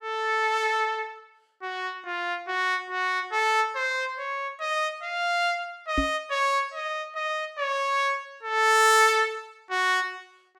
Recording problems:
microphone thump; at 6 s; peak +1 dB vs average level

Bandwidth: 17 kHz